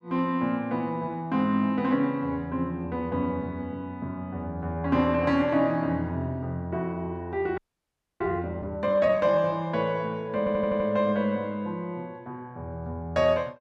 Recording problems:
audio freezing; at 7.5 s for 0.5 s
stutter; at 10 s

